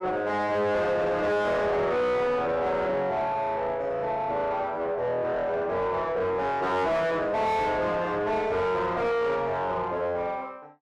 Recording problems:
distortion; soft clipping, signal-to-distortion ratio 6 dB

